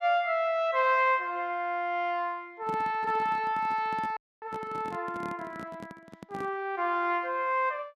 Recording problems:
microphone handling noise; from 2.5 to 6.5 s; peak -8 dB vs average level
dropout; at 4 s

